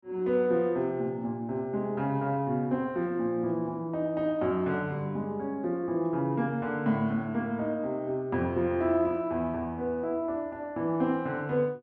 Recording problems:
none

